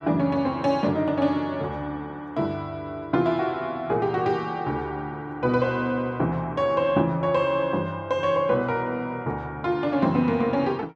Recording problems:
none

